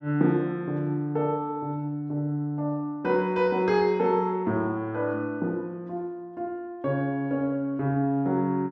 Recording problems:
none

